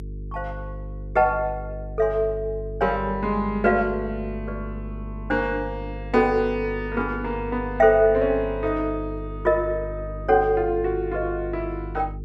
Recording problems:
hum; 50 Hz, harmonics up to 450 Hz, SNR 11 dB

